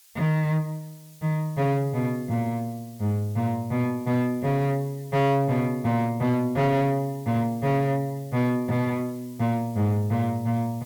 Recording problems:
distortion; hard clipping, signal-to-distortion ratio 12 dB
hiss; slope +4 dB per octave, SNR 25 dB

